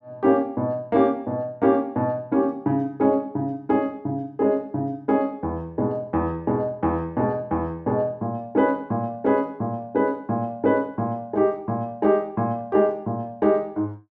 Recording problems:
none

